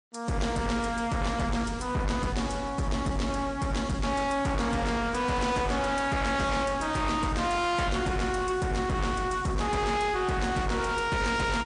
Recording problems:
lossy codec; MP3, log-spectral distance 3 dB, nothing above 9.2 kHz
distortion; hard clipping, signal-to-distortion ratio 7 dB

